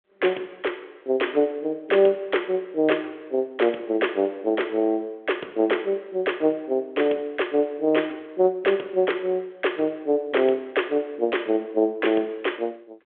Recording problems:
phone line; 300 Hz to 3.4 kHz, G.726

